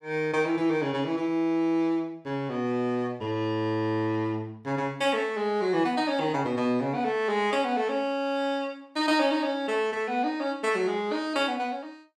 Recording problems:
none

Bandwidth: 16.5 kHz